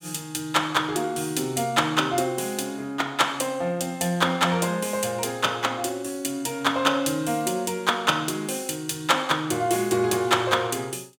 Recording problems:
none

